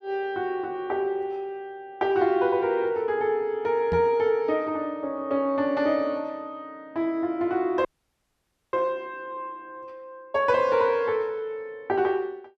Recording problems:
knock on the microphone; at 4 s; peak -2 dB vs average level
audio freezing; at 8 s for 1 s

